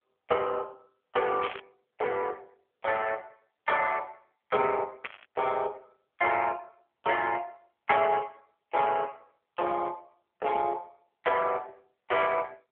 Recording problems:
phone line; 370 Hz to 3.3 kHz, AMR-NB
static burst; at 1.5 s and at 5 s; peak -2 dB vs average level

